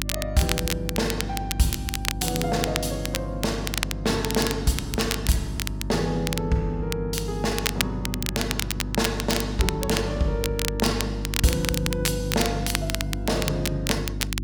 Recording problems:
hum; 50 Hz, harmonics up to 350 Hz, SNR 5 dB
crackling; vinyl, SNR 3 dB

